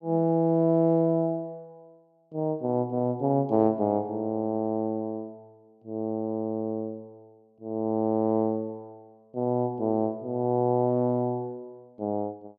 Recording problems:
none

